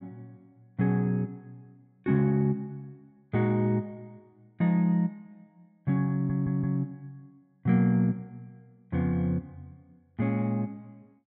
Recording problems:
stutter; at 6 s

